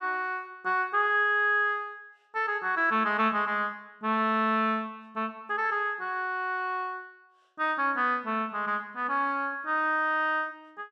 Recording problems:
none

